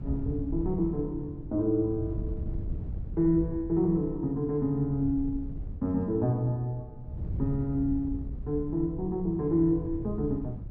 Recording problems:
wind noise; below 120 Hz, SNR 9 dB

